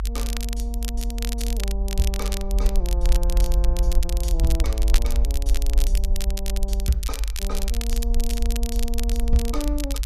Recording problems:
low-frequency rumble; below 50 Hz, SNR -7 dB
crackling; vinyl, SNR 3 dB

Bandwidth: 14 kHz